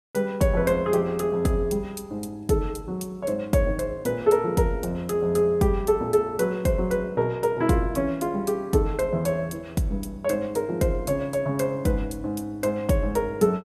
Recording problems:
none

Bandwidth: 14.5 kHz